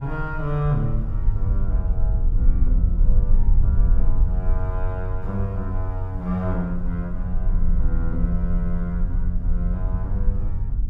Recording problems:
low-frequency rumble; below 52 Hz, SNR -4 dB

